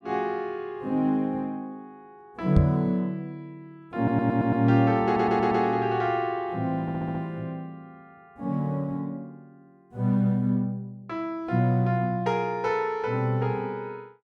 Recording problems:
knock on the microphone; at 2.5 s; peak +8 dB vs average level
stutter; at 4 s, at 5 s and at 7 s

